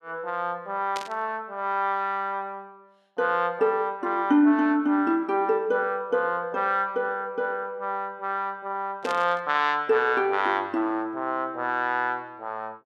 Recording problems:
burst of static; at 1 s and at 9 s; peak -5 dB vs average level

